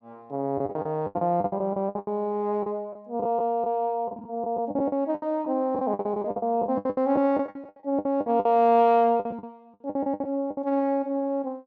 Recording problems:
packet loss; 18% of the sound replaced, filled with the last packet

